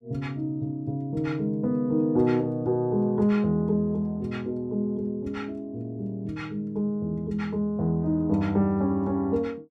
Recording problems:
none

